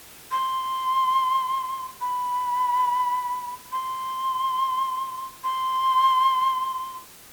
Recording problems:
background hiss; slope -1 dB per octave, SNR 19 dB

